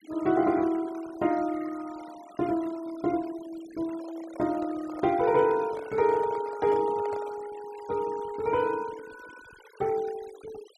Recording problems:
denoising artefacts; signal-to-artefact ratio 20 dB
microphone handling noise; from 4 to 7.5 s; peak -10 dB vs average level

